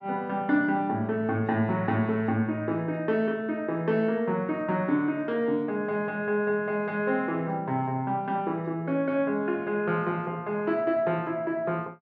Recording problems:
treble missing; nothing above 8 kHz

